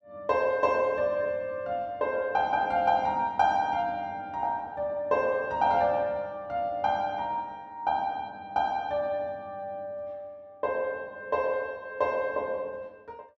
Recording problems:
none

